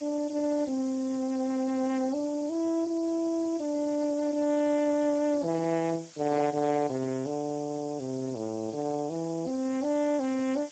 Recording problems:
codec artefacts; Speex, log-spectral distance 10 dB, nothing above 7.3 kHz
background hiss; slope +3 dB per octave, SNR 20 dB

